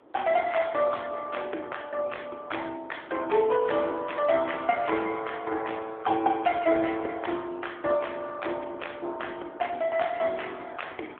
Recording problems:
phone line; 280 Hz to 3.5 kHz, AMR-NB
wind noise; below 660 Hz, SNR 20 dB

